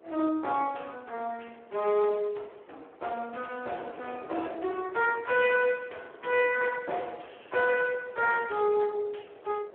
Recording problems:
phone line; 340 Hz to 3.1 kHz, Speex
wind noise; below 720 Hz, SNR 21 dB

